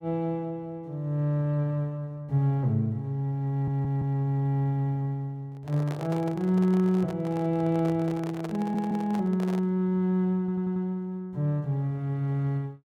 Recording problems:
audio stuttering; at 3.5 s, at 8.5 s and at 10 s
handling noise; from 5.5 to 10 s; peak -6 dB vs average level

